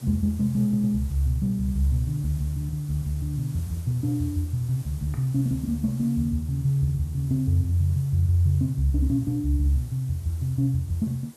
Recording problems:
background hiss; SNR 23 dB
audio stuttering; at 0.5 s

